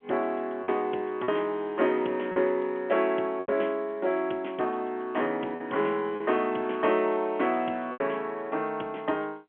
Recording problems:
telephone audio; 280 Hz to 3.3 kHz, G.711
packet loss; 4% of the sound replaced, filled with repeated pitch periods

